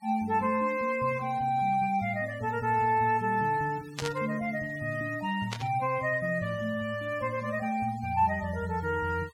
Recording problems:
denoising artefacts; signal-to-artefact ratio 23 dB
burst of static; at 4 s and at 5.5 s; peak -1 dB vs average level

